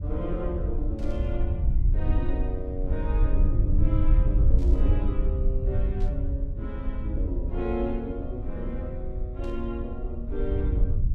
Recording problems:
low-frequency rumble; below 68 Hz, SNR -6 dB
burst of static; 4 times, first at 1 s; peak -14 dB vs average level

